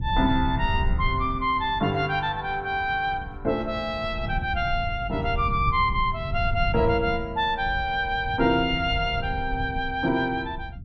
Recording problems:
rumble; below 110 Hz, SNR 8 dB

